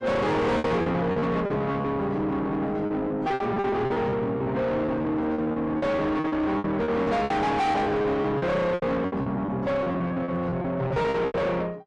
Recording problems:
codec artefacts; AAC, log-spectral distance 2 dB, nothing above 10.4 kHz
distortion; soft clipping, signal-to-distortion ratio 5 dB
lost packets; 15% of the sound replaced, filled with repeated pitch periods

